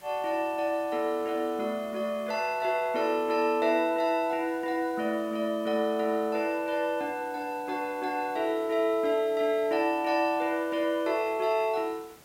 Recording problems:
background hiss; slope -3 dB per octave, SNR 25 dB

